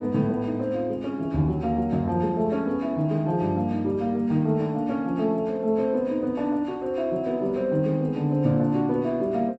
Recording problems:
none

